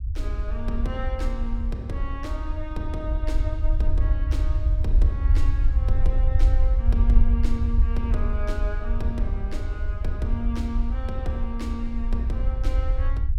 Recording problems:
rumble; below 62 Hz, SNR -8 dB

